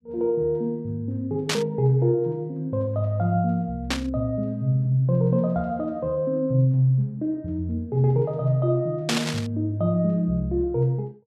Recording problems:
static burst; at 1.5 s, at 4 s and at 9 s; peak +3 dB vs average level

